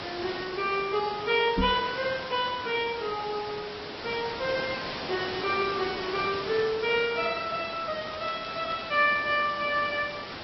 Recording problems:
treble missing; nothing above 4.8 kHz
lossy compression; AAC, log-spectral distance 13 dB
background hiss; slope -3 dB per octave, SNR 7 dB
microphone thump; at 1.5 s; peak +4 dB vs average level
crackle; from 8 to 9 s; loose cable, SNR 17 dB

